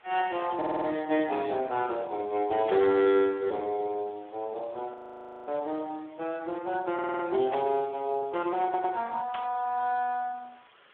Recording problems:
telephone audio; 260 Hz to 3.7 kHz, Speex
hiss; SNR 28 dB
audio stuttering; at 0.5 s, at 7 s and at 8.5 s
burst of static; at 2.5 s, at 7.5 s and at 9.5 s; peak -5 dB vs average level
frozen audio; at 5 s for 0.5 s

